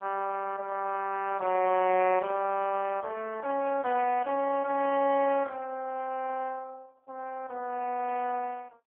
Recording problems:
telephone audio; 300 Hz to 3.1 kHz, AMR-NB

